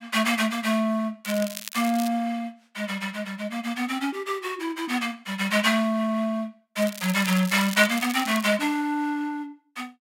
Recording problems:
crackling; at 1 s and from 7 to 8.5 s; loose cable, SNR 11 dB

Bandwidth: 16 kHz